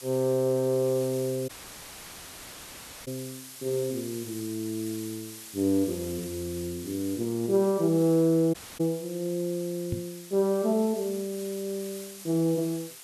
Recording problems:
background hiss; slope +1 dB per octave, SNR 14 dB
dropout; at 1.5 s for 1.5 s and at 8.5 s
knock on the microphone; at 10 s; peak +1 dB vs average level

